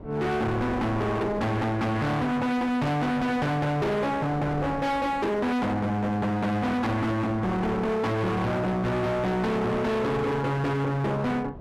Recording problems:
distortion; hard clipping, signal-to-distortion ratio 6 dB
wind noise; below 580 Hz, SNR 16 dB

